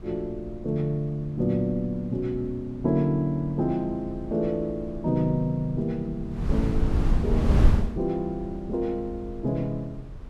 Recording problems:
wind noise; below 120 Hz, SNR 2 dB

